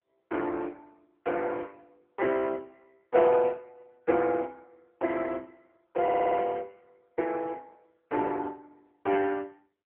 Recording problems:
phone line; 260 Hz to 3.6 kHz, AMR-NB
audio stuttering; at 6 s

